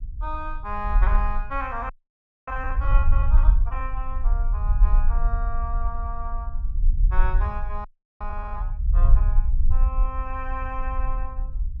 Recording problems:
rumble; below 48 Hz, SNR -8 dB
frozen audio; at 2 s for 0.5 s and at 8 s

